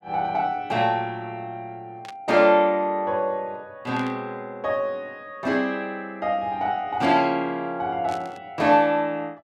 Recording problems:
burst of static; at 2 s, at 4 s and at 8 s; peak -12 dB vs average level

